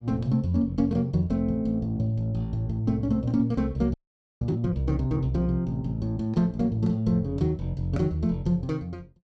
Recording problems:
audio freezing; at 4 s

